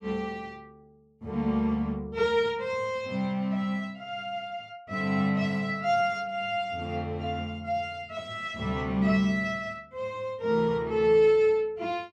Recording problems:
none

